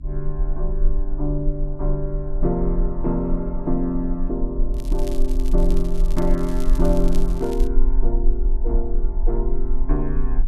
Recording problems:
hum; 50 Hz, harmonics up to 300 Hz, SNR 15 dB
low-frequency rumble; below 34 Hz, strongest tone 18 Hz, SNR -1 dB
crackling; from 4.5 to 7.5 s; loose cable, SNR 17 dB

